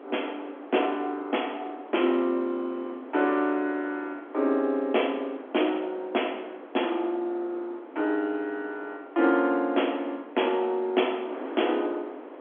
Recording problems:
phone line; 240 Hz to 3.4 kHz, G.711
wind on the microphone; below 790 Hz, SNR 15 dB

